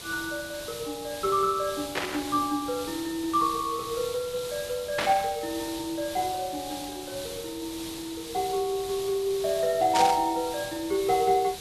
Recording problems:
background hiss; SNR 10 dB
burst of static; at 2 s, at 5 s and at 10 s; peak +3 dB vs average level

